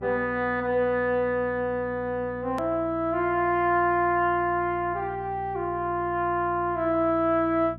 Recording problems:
hum; 60 Hz, harmonics up to 660 Hz, SNR 18 dB
click at an edit; at 2.5 s

